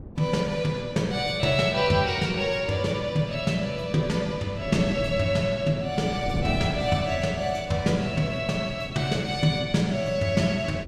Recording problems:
wind noise; below 280 Hz, SNR 13 dB

